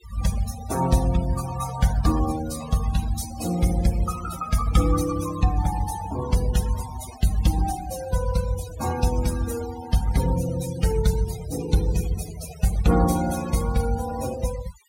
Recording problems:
denoising artefacts; signal-to-artefact ratio 11 dB

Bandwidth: 16 kHz